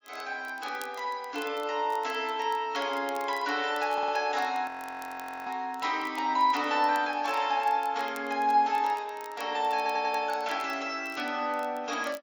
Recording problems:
codec artefacts; MP3, log-spectral distance 2 dB
crackling; vinyl, SNR 24 dB
audio stuttering; at 4 s and at 10 s
audio freezing; at 4.5 s for 1 s

